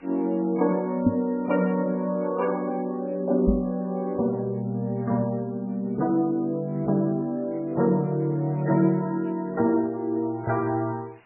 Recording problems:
codec artefacts; MP3, log-spectral distance 3 dB, nothing above 2.3 kHz
hiss; SNR 30 dB
microphone bump; at 1 s and at 3.5 s; peak +6 dB vs average level

